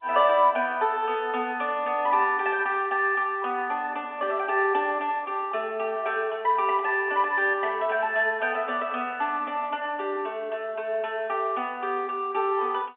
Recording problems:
telephone audio; 220 Hz to 3.5 kHz, G.711

